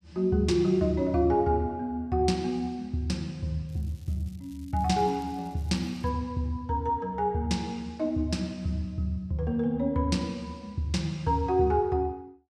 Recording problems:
crackle; from 3.5 to 6 s; loose cable, SNR 30 dB

